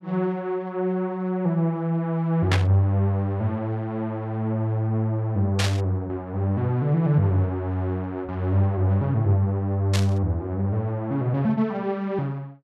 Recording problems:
burst of static; at 2.5 s, at 5.5 s and at 10 s; peak +3 dB vs average level

